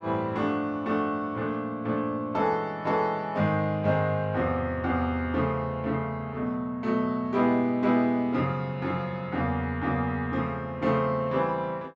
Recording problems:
none

